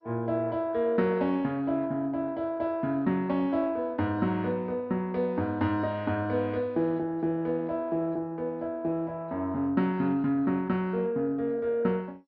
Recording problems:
codec artefacts; MP2, log-spectral distance 2 dB, nothing above 4.5 kHz

